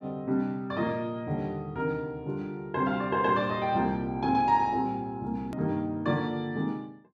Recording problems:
click at an edit; at 5.5 s

